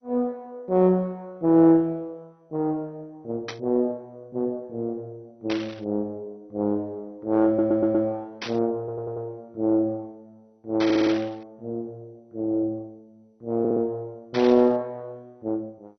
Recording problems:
lossy compression; MP2, log-spectral distance 2 dB
static burst; 5 times, first at 3.5 s; peak -3 dB vs average level
audio stuttering; 4 times, first at 7.5 s

